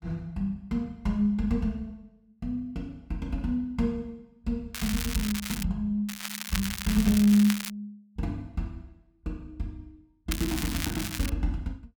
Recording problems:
crackling; at 4.5 s, from 6 to 7.5 s and at 10 s; loose cable, SNR 5 dB

